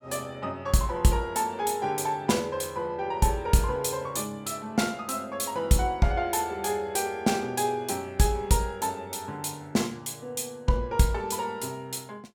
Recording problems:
none

